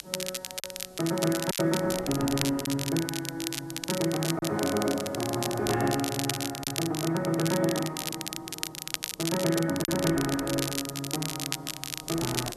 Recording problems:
hiss; slope +3 dB per octave, SNR 27 dB
wind noise; below 720 Hz, SNR 21 dB
crackle; vinyl, SNR 4 dB
packet loss; 2% of the sound replaced, filled with silence

